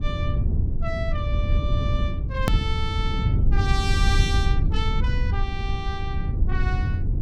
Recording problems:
low-frequency rumble; below 98 Hz, SNR -6 dB
click at an edit; at 2.5 s

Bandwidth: 17 kHz